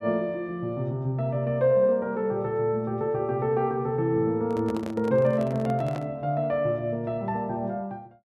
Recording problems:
microphone handling noise; from 4.5 to 6 s; peak -7 dB vs average level

